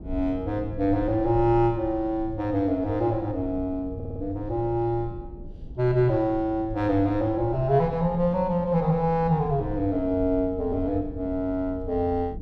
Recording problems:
low-frequency rumble; below 130 Hz, SNR 15 dB
audio stuttering; at 4 s

